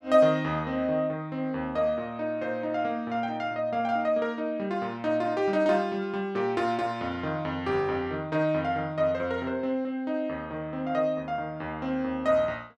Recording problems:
none

